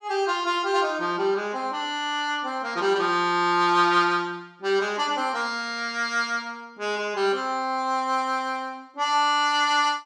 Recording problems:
none

